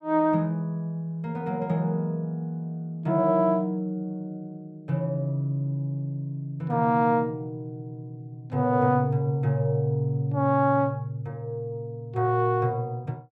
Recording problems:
none

